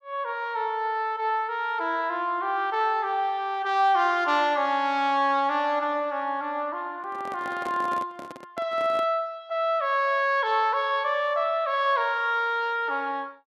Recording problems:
microphone handling noise; from 7 to 9 s; peak -8 dB vs average level

